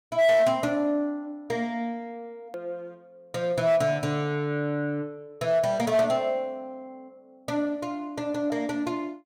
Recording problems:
distortion; hard clipping, uneven, signal-to-distortion ratio 11 dB
click at an edit; at 2.5 s

